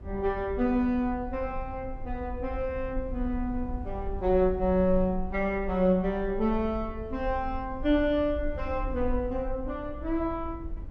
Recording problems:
low-frequency rumble; below 60 Hz, SNR 11 dB

